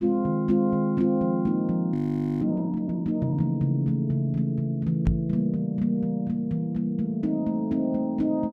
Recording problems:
frozen audio; at 2 s
microphone thump; at 5 s; peak +3 dB vs average level

